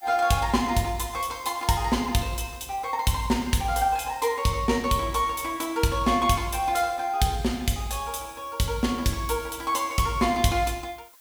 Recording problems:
background hiss; SNR 25 dB

